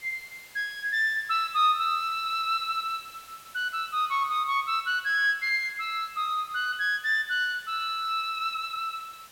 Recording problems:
background hiss; slope 0 dB per octave, SNR 22 dB

